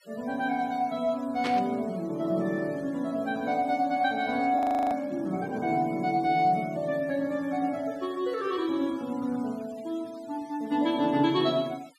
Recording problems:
noise reduction artefacts; signal-to-artefact ratio 24 dB
burst of static; at 1.5 s; peak -2 dB vs average level
audio freezing; at 4.5 s

